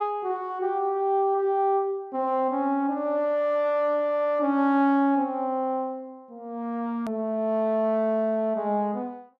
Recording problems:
click at an edit; at 7 s

